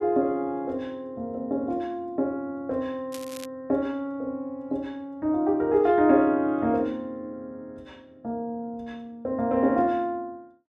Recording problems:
crackling; at 3 s; loose cable, SNR 18 dB

